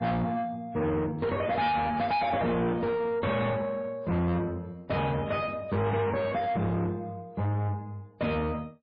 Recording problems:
lossy compression; MP3, log-spectral distance 2 dB, nothing above 4.1 kHz
distortion; soft clipping, signal-to-distortion ratio 6 dB

